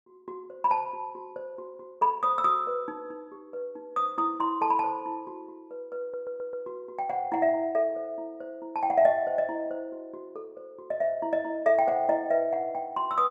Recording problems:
stutter; at 6 s

